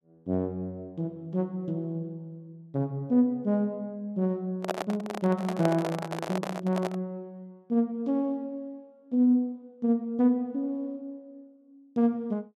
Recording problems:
handling noise; from 4.5 to 7 s; peak +3 dB vs average level

